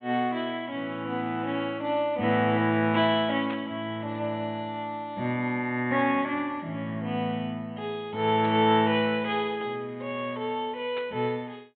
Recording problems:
treble missing; nothing above 4 kHz
burst of static; at 3.5 s, at 8.5 s and at 11 s; peak -8 dB vs average level

